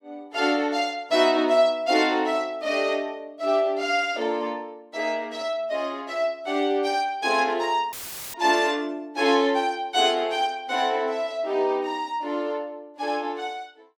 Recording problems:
dropout; at 8 s; filled with static

